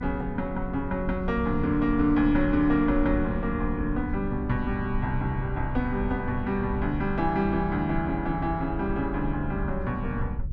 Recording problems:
mains hum; 60 Hz, harmonics up to 480 Hz, SNR 21 dB
low-frequency rumble; below 78 Hz, SNR 8 dB

